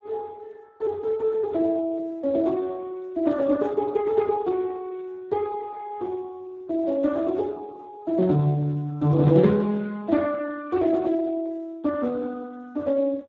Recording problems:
lossy codec; Speex, log-spectral distance 2 dB

